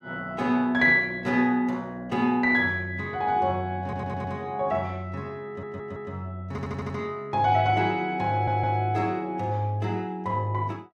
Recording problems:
audio stuttering; 4 times, first at 4 s

